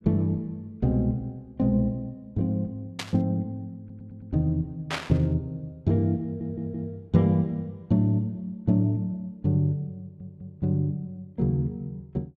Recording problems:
burst of static; at 3 s and at 5 s; peak +2 dB vs average level
audio stuttering; at 4 s, at 6 s and at 10 s

